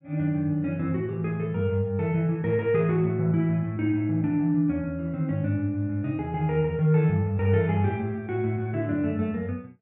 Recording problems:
low-pass filter; nothing above 4 kHz

